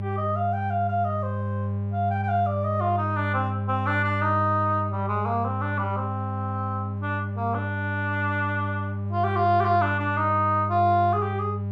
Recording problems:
electrical hum; 50 Hz, harmonics up to 800 Hz, SNR 4 dB

